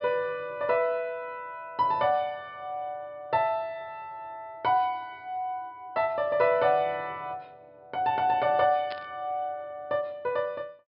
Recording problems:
low-pass filter; nothing above 5.5 kHz
burst of static; at 9 s; peak -8 dB vs average level

